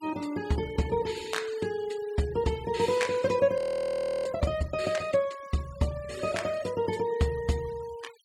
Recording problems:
noise reduction artefacts; signal-to-artefact ratio 20 dB
frozen audio; at 3.5 s for 0.5 s

